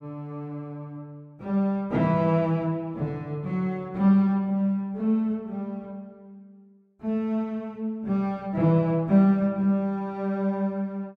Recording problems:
none

